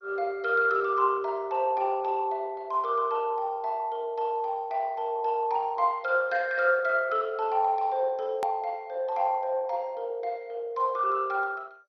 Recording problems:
lossy codec; MP2, log-spectral distance 2 dB, nothing above 13.1 kHz
click at an edit; at 8.5 s

